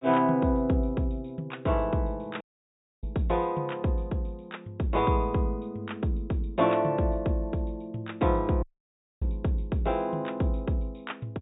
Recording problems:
treble missing; nothing above 4 kHz
audio cutting out; at 2.5 s for 0.5 s and at 8.5 s for 0.5 s

